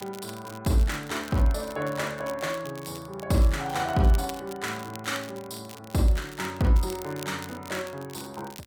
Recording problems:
crackling; vinyl, SNR 17 dB

